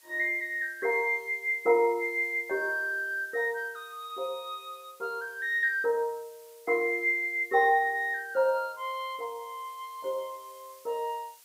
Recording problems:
background hiss; slope +2 dB per octave, SNR 26 dB

